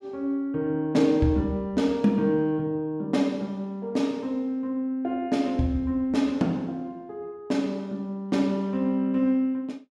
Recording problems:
none

